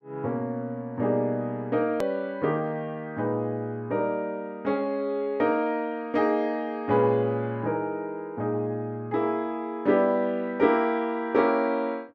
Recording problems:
click at an edit; at 2 s

